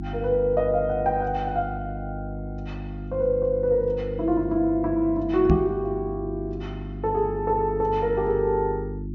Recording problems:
treble missing; nothing above 7.1 kHz
hum; 50 Hz, harmonics up to 350 Hz, SNR 9 dB
microphone bump; at 5.5 s; peak +8 dB vs average level

